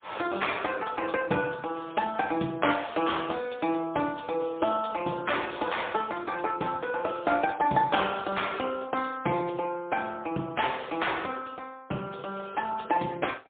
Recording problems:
phone line; 190 Hz to 3.5 kHz, AMR-NB, then MP3

